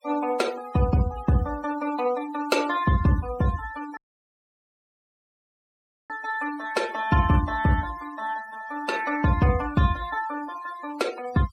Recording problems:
noise reduction artefacts; signal-to-artefact ratio 17 dB
audio cutting out; at 4 s for 2 s

